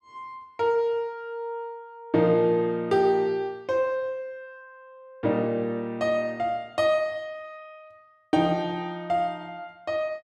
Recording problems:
none

